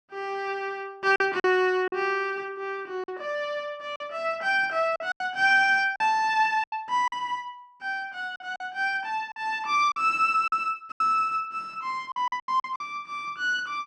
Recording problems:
packet loss; 7% of the sound replaced, filled with silence

